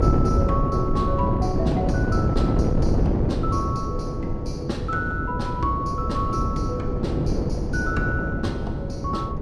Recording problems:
wind on the microphone; below 290 Hz, SNR -4 dB

